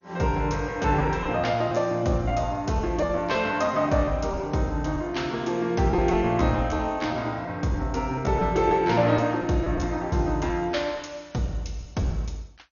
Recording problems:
codec artefacts; MP2, log-spectral distance 3 dB, nothing above 6.7 kHz
packet loss; 6% of the sound replaced, filled with repeated pitch periods

